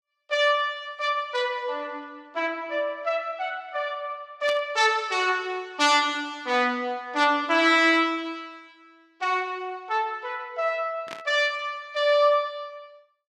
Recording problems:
burst of static; at 4.5 s and at 11 s; peak -8 dB vs average level

